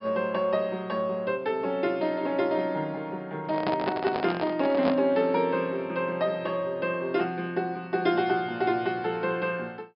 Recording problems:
low-pass filter; nothing above 5.5 kHz
microphone handling noise; from 3.5 to 5 s; peak +2 dB vs average level

